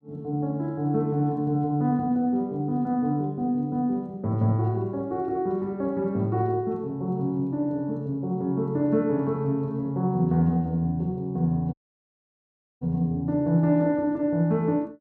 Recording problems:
audio cutting out; at 12 s for 1 s

